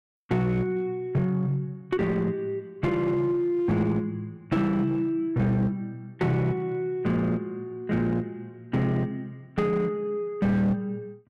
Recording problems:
distortion; hard clipping, uneven, signal-to-distortion ratio 10 dB

